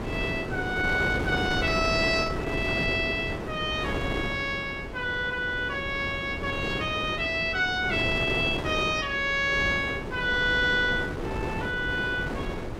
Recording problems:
wind on the microphone; below 640 Hz, SNR 6 dB

